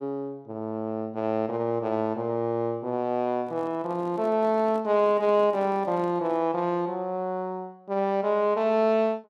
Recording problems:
handling noise; from 3.5 to 6.5 s; peak -12 dB vs average level

